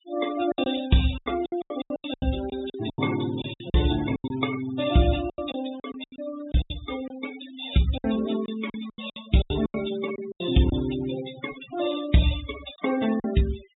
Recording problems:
treble cut off; nothing above 4 kHz
denoising artefacts; signal-to-artefact ratio 12 dB
packet loss; 14% of the sound replaced, filled with silence

